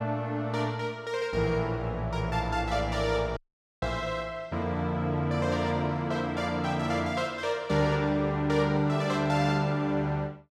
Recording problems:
dropout; at 3.5 s

